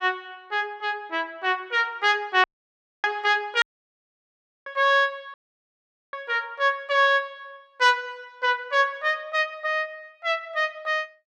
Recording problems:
dropout; at 2.5 s for 0.5 s, at 3.5 s for 1 s and at 5.5 s for 1 s

